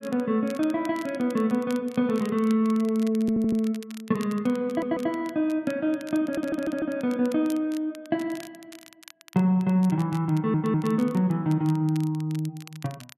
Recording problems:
crackle; vinyl, SNR 22 dB
audio stuttering; 4 times, first at 3 s

